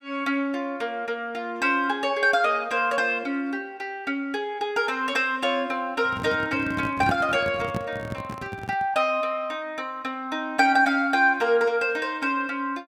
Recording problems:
microphone handling noise; from 6 to 9 s; peak 0 dB vs average level

